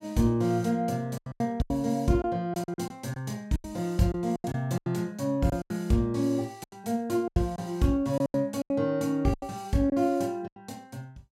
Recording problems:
packet loss; 12% of the sound replaced, filled with silence

